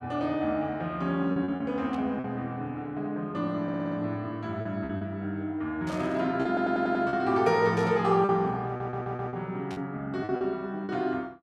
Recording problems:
lost packets; 6% of the sound replaced, filled with repeated pitch periods
burst of static; 4 times, first at 2 s; peak -12 dB vs average level
stutter; at 3.5 s, at 6.5 s and at 8.5 s

